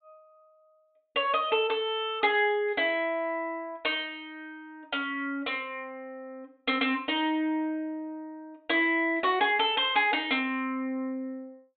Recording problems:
treble cut off; nothing above 4 kHz

